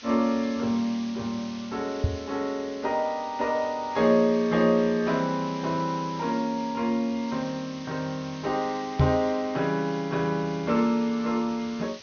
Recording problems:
treble missing; nothing above 6.4 kHz
hiss; SNR 18 dB
knock on the microphone; at 2 s and at 9 s; peak +8 dB vs average level

